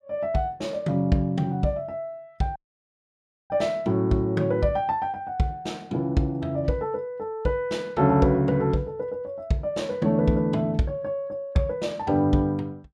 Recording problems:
audio cutting out; at 2.5 s for 1 s

